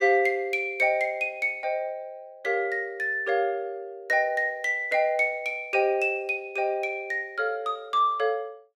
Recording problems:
none

